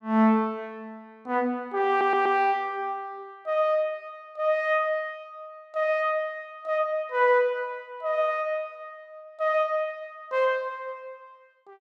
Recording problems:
audio stuttering; at 2 s

